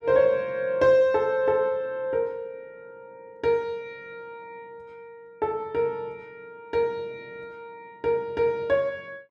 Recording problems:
none

